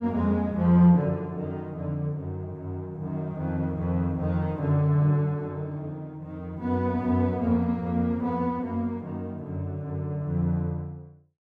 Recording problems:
none

